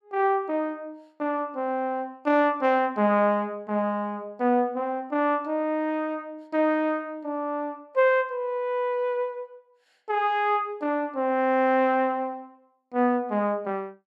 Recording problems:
none

